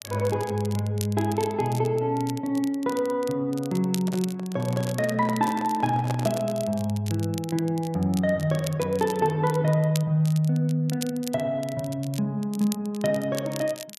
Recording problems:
crackling; vinyl, SNR 16 dB
handling noise; from 4 to 6.5 s; peak -3 dB vs average level

